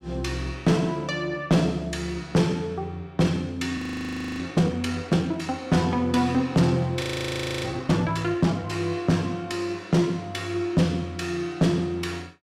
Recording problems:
distortion; soft clipping, signal-to-distortion ratio 10 dB
frozen audio; at 4 s for 0.5 s and at 7 s for 0.5 s

